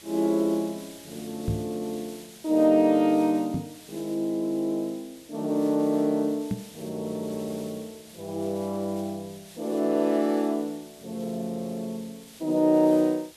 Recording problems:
hiss; SNR 21 dB
knock on the microphone; at 1.5 s, at 3.5 s and at 6.5 s; peak +1 dB vs average level

